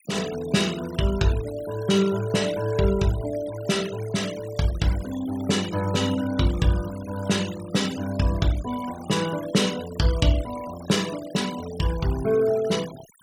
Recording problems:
denoising artefacts; signal-to-artefact ratio 15 dB

